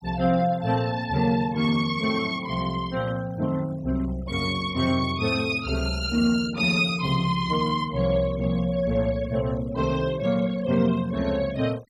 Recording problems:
noise reduction artefacts; signal-to-artefact ratio 22 dB

